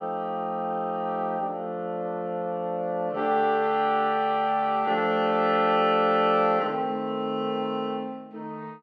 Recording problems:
none

